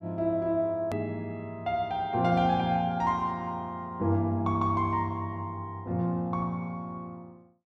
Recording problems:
click at an edit; at 1 s

